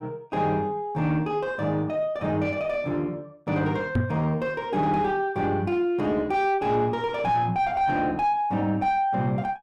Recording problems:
distortion; soft clipping, signal-to-distortion ratio 10 dB
microphone thump; at 4 s; peak +5 dB vs average level

